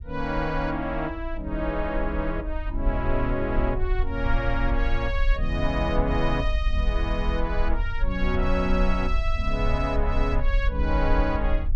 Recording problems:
rumble; below 52 Hz, SNR 2 dB

